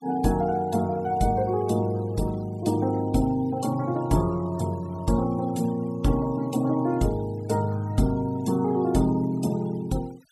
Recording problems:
denoising artefacts; signal-to-artefact ratio 23 dB

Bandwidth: 15.5 kHz